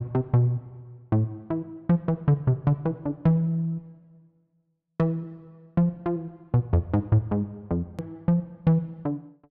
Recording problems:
hard cut with a click; at 8 s

